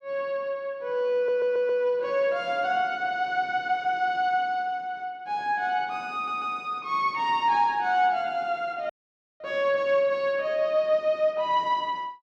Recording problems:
audio stuttering; at 1 s and at 6 s
audio cutting out; at 9 s for 0.5 s

